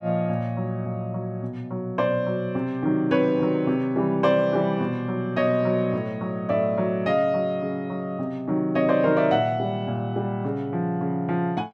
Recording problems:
none

